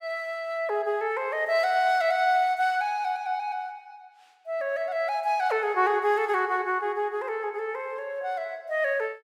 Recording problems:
none

